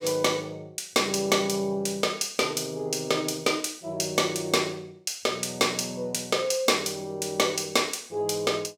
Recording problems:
none

